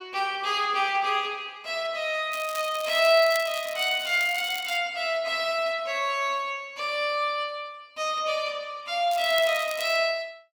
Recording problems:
crackling; from 2.5 to 5 s and at 9 s; loose cable, SNR 14 dB

